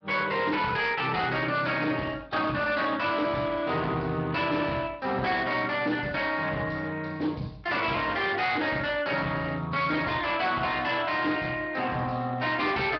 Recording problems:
treble cut off; nothing above 5 kHz
lossy codec; Speex, log-spectral distance 4 dB
distortion; hard clipping, signal-to-distortion ratio 10 dB

